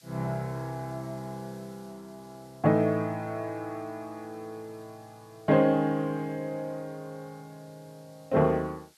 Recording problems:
background hiss; slope +3 dB per octave, SNR 29 dB

